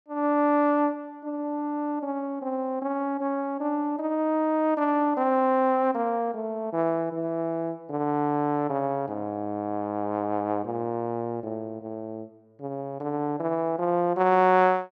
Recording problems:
none

